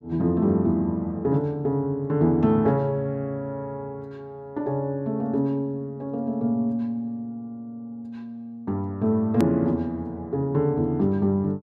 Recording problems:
click at an edit; at 9.5 s

